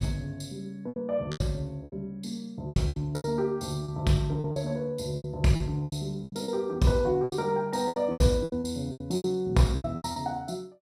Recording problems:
lost packets; 15% of the sound replaced, filled with repeated pitch periods

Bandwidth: 15.5 kHz